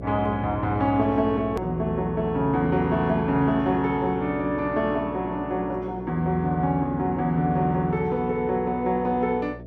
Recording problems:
hum; 60 Hz, harmonics up to 660 Hz, SNR 14 dB
click at an edit; at 1.5 s

